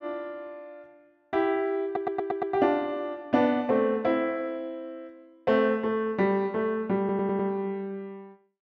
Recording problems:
stutter; at 2 s and at 7 s

